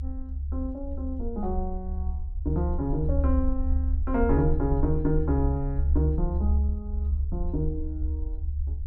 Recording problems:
rumble; below 72 Hz, SNR -1 dB

